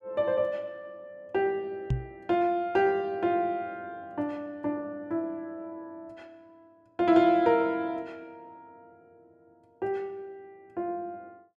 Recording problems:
microphone bump; at 2 s; peak +4 dB vs average level

